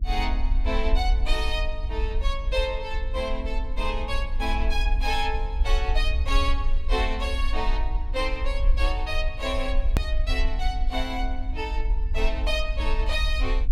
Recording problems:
electrical hum; 50 Hz, harmonics up to 300 Hz, SNR 18 dB
low-frequency rumble; below 50 Hz, SNR -1 dB
click at an edit; at 10 s

